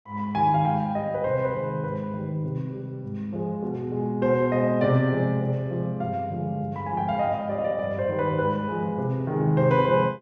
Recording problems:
none

